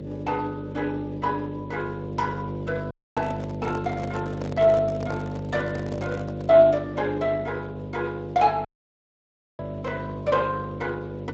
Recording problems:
codec artefacts; Speex, log-spectral distance 3 dB
mains hum; 50 Hz, harmonics up to 600 Hz, SNR 8 dB
dropout; at 3 s and at 8.5 s for 1 s
microphone handling noise; from 3 to 6.5 s; peak -5 dB vs average level

